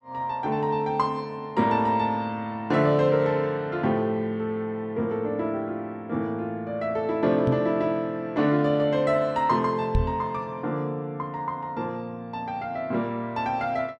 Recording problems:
microphone thump; at 7.5 s and at 10 s; peak +5 dB vs average level

